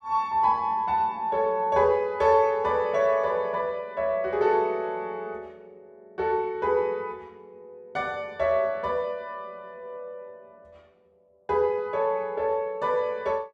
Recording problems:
none

